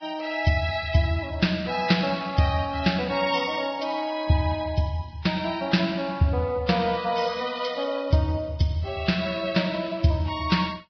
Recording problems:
lossy compression; Vorbis, log-spectral distance 4 dB, nothing above 5.3 kHz

